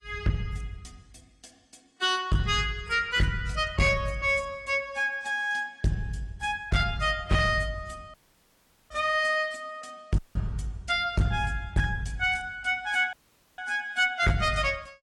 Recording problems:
lossy codec; AAC, log-spectral distance 2 dB
distorted audio; hard clipping, uneven, signal-to-distortion ratio 10 dB
dropout; at 8 s for 1 s, at 10 s and at 13 s

